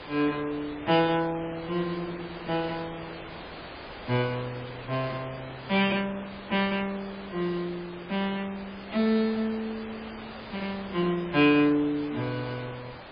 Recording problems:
codec artefacts; MP3, log-spectral distance 10 dB, nothing above 4.4 kHz
background hiss; SNR 13 dB

